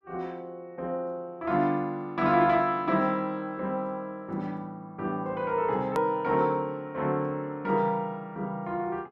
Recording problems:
click at an edit; at 6 s

